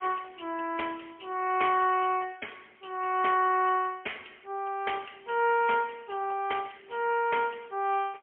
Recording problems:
phone line; 280 Hz to 3.2 kHz, AMR-NB, then MP3

